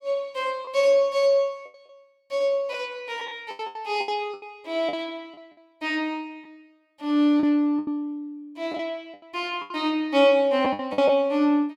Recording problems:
packet loss; 9% of the sound replaced, filled with the last packet

